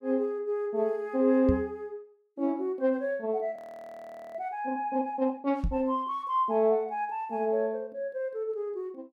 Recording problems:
microphone bump; at 1.5 s and at 5.5 s; peak +4 dB vs average level
frozen audio; at 3.5 s for 1 s

